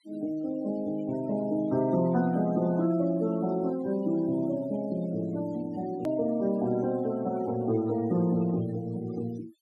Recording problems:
noise reduction artefacts; signal-to-artefact ratio 20 dB
edit click; at 6 s

